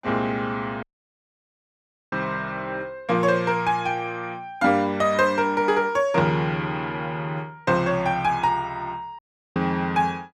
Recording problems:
audio cutting out; at 1 s for 1.5 s and at 9 s

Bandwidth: 15.5 kHz